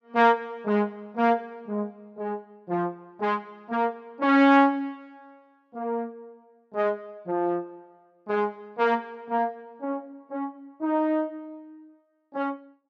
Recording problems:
none

